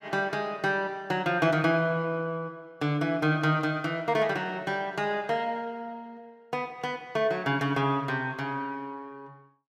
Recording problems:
none

